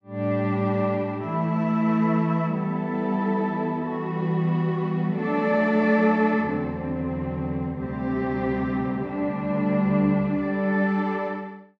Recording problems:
none

